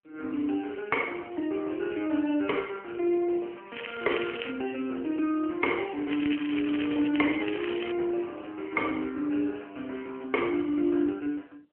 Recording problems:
telephone audio; 260 Hz to 3.2 kHz, AMR-NB
crackling; at 3.5 s and from 6 to 8 s; loose cable, SNR 9 dB

